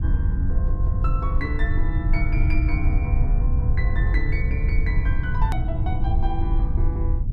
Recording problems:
rumble; below 78 Hz, SNR -8 dB
click at an edit; at 5.5 s

